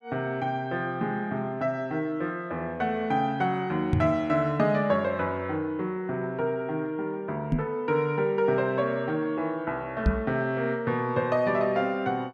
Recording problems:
knock on the microphone; at 4 s, at 7.5 s and at 10 s; peak +7 dB vs average level

